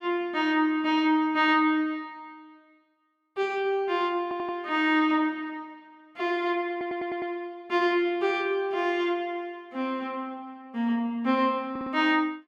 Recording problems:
stutter; at 4 s, at 6.5 s and at 12 s

